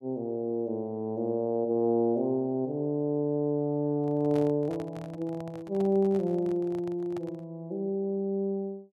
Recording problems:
handling noise; from 4 to 7.5 s; peak -11 dB vs average level

